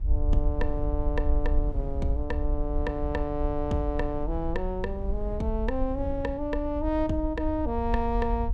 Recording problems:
low-frequency rumble; below 60 Hz, SNR 2 dB
wind noise; below 150 Hz, SNR 14 dB

